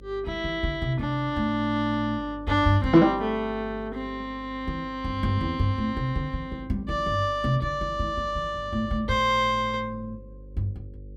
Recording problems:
hum; 50 Hz, harmonics up to 550 Hz, SNR 18 dB

